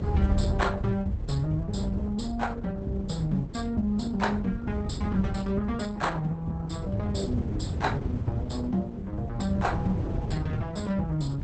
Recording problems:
lossy compression; Opus, log-spectral distance 2 dB, nothing above 8.2 kHz
rumble; below 120 Hz, SNR 0 dB

